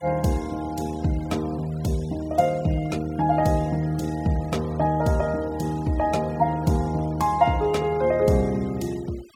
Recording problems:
denoising artefacts; signal-to-artefact ratio 23 dB

